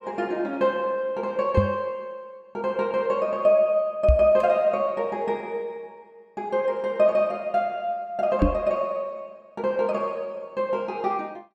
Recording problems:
knock on the microphone; at 1.5 s, at 4 s and at 8.5 s; peak +8 dB vs average level

